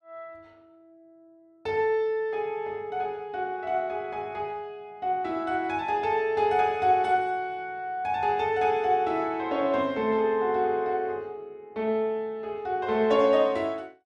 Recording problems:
none

